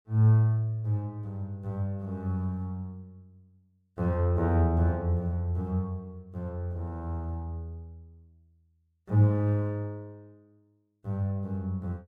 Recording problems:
none

